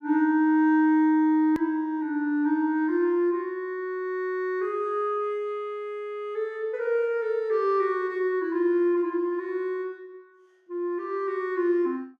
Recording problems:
click at an edit; at 1.5 s

